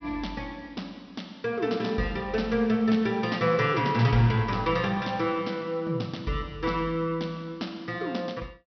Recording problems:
treble cut off; nothing above 5.9 kHz

